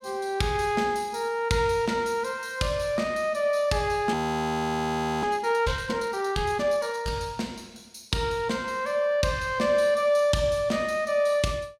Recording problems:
audio freezing; at 4 s for 1 s

